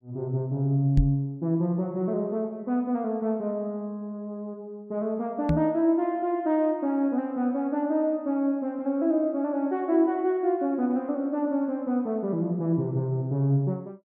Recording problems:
microphone bump; at 1 s and at 5.5 s; peak +6 dB vs average level

